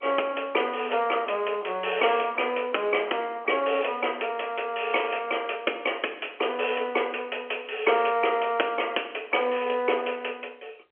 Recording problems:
phone line; 300 Hz to 3.2 kHz, G.711

